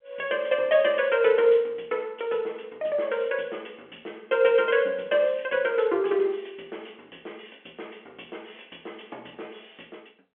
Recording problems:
telephone audio; 240 Hz to 3.4 kHz, G.711

